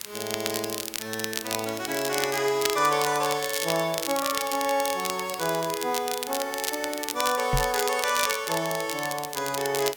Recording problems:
hiss; slope -1 dB per octave, SNR 17 dB
crackle; vinyl, SNR 5 dB
microphone bump; at 7.5 s; peak +3 dB vs average level

